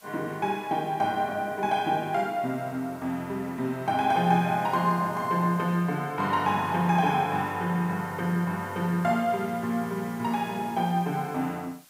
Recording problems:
hiss; slope +1 dB per octave, SNR 24 dB

